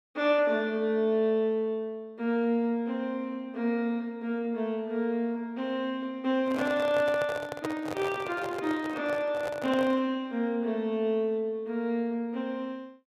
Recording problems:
handling noise; from 6.5 to 10 s; peak 0 dB vs average level

